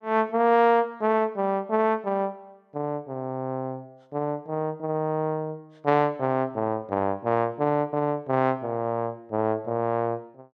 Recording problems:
none

